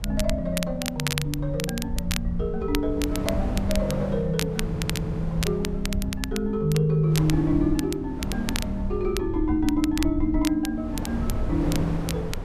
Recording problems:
low-frequency rumble; below 74 Hz, SNR 8 dB
wind on the microphone; below 460 Hz, SNR 10 dB
crackling; vinyl, SNR 9 dB
stutter; at 4.5 s

